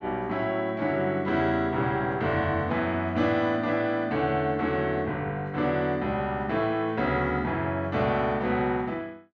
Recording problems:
none

